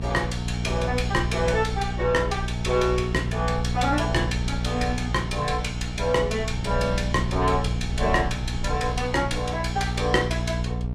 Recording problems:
mains hum; 60 Hz, harmonics up to 720 Hz, SNR 4 dB
low-frequency rumble; below 82 Hz, SNR 10 dB

